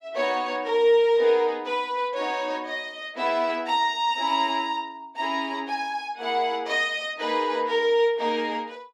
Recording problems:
none

